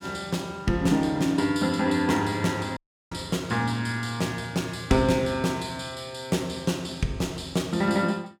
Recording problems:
dropout; at 3 s

